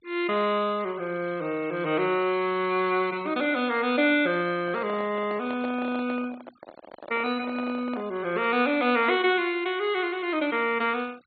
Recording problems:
low-pass filter; nothing above 4.4 kHz
denoising artefacts; signal-to-artefact ratio 24 dB
handling noise; from 4.5 to 8 s; peak -8 dB vs average level

